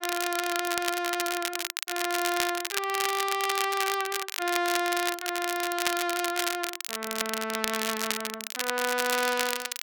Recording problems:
crackle; vinyl, SNR 2 dB

